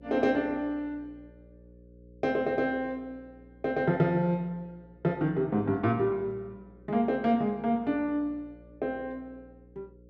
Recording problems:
hum; 60 Hz, harmonics up to 540 Hz, SNR 25 dB

